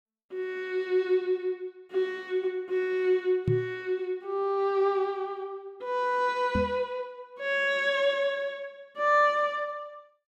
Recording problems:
microphone bump; at 3.5 s and at 6.5 s; peak +4 dB vs average level

